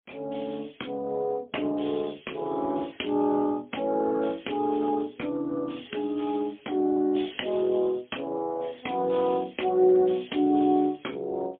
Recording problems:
telephone audio; 220 Hz to 3.4 kHz, AMR-NB, then MP3

